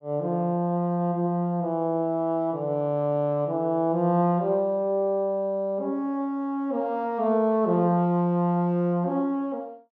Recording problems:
none

